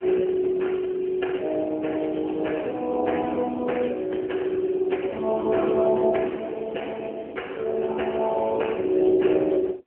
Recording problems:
telephone audio; 280 Hz to 3.1 kHz, AMR-NB

